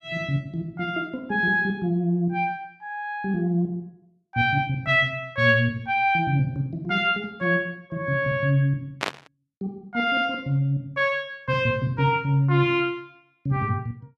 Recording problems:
static burst; at 9 s; peak +2 dB vs average level

